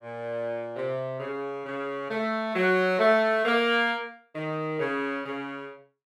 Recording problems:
none

